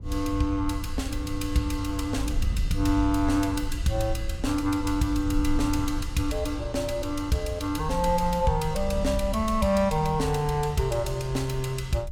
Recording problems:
wind noise; below 74 Hz, SNR 7 dB

